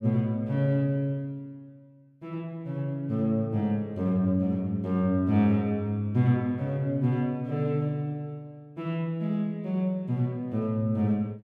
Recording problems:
none

